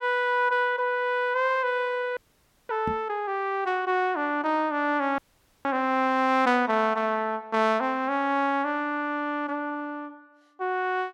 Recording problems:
audio freezing; at 2 s for 0.5 s and at 5 s
microphone bump; at 3 s; peak -4 dB vs average level

